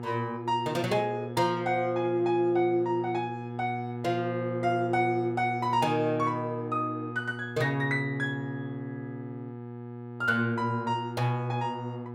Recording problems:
electrical hum; 60 Hz, harmonics up to 1.7 kHz, SNR 8 dB

